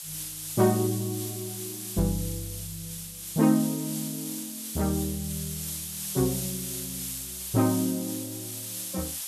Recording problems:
hiss; slope +4 dB per octave, SNR 5 dB

